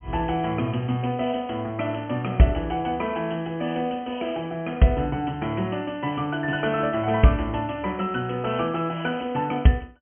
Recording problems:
treble missing; nothing above 3.2 kHz

